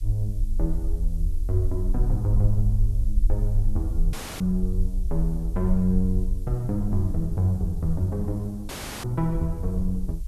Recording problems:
background hiss; SNR 28 dB
low-frequency rumble; below 46 Hz, SNR 2 dB
dropout; at 4 s and at 8.5 s

